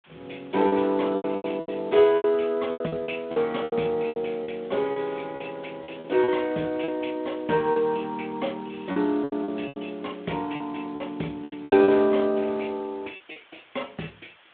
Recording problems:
telephone audio; 190 Hz to 3.6 kHz, Speex
hiss; SNR 27 dB
packet loss; 12% of the sound replaced, filled with repeated pitch periods

